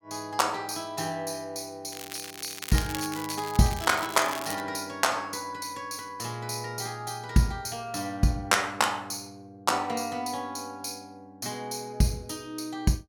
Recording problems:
crackling; from 2 to 4.5 s; loose cable, SNR 9 dB

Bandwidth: 17.5 kHz